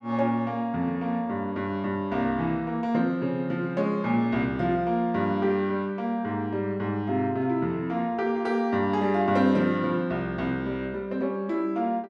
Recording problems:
none

